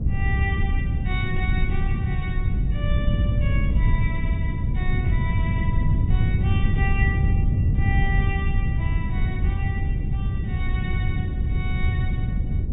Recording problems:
treble missing; nothing above 4 kHz
wind on the microphone; below 120 Hz, SNR -10 dB

